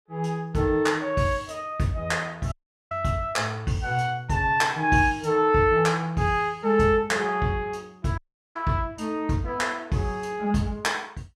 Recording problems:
dropout; at 2.5 s and at 8 s

